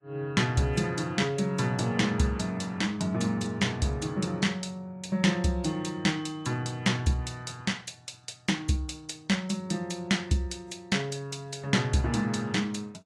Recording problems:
lossy codec; AAC, log-spectral distance 2 dB, nothing above 11 kHz

